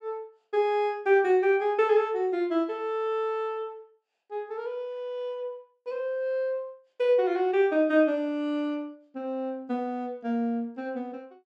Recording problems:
none

